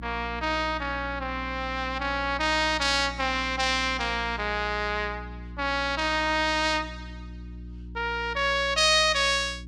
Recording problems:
electrical hum; 60 Hz, harmonics up to 360 Hz, SNR 15 dB

